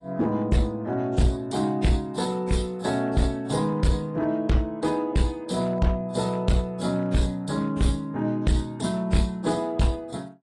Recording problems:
codec artefacts; AAC, then AAC, log-spectral distance 2 dB
distortion; hard clipping, uneven, signal-to-distortion ratio 10 dB

